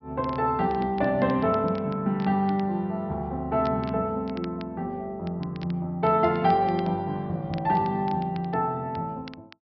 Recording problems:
treble cut off; nothing above 5.5 kHz
crackle; vinyl, SNR 24 dB

